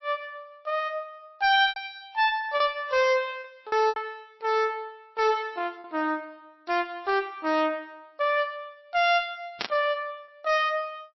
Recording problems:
lossy compression; MP3, log-spectral distance 2 dB, nothing above 5.7 kHz
distortion; hard clipping, signal-to-distortion ratio 11 dB
packet loss; 4% of the sound replaced, filled with repeated pitch periods
static burst; at 9.5 s; peak +1 dB vs average level

